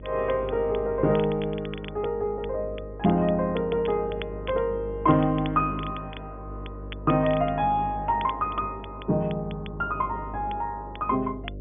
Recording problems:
treble cut off; nothing above 3.4 kHz
hum; 50 Hz, harmonics up to 600 Hz, SNR 14 dB
crackling; vinyl, SNR 19 dB

